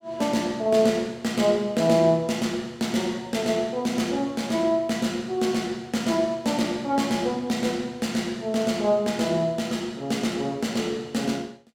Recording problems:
none

